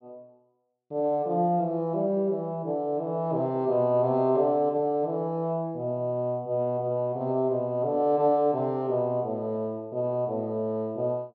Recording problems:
none

